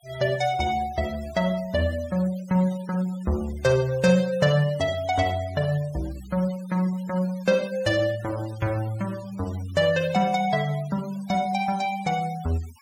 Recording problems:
noise reduction artefacts; signal-to-artefact ratio 20 dB

